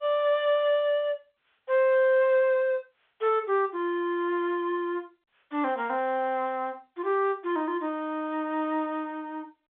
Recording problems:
telephone audio; 260 Hz to 3.6 kHz, G.711

